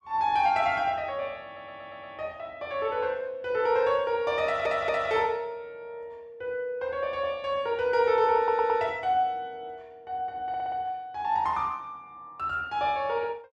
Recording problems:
stutter; 4 times, first at 1.5 s

